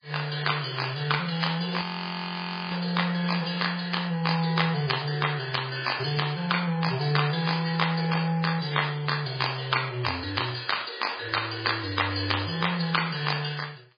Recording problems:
lossy compression; MP3, log-spectral distance 11 dB, nothing above 4.8 kHz
frozen audio; at 2 s for 1 s

